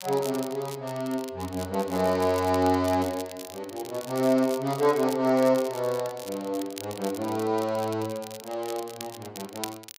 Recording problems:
crackle; vinyl, SNR 15 dB

